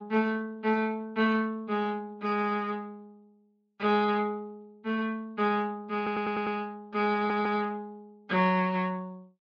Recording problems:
lossy codec; MP3, then Speex, log-spectral distance 2 dB
stutter; at 6 s and at 7 s

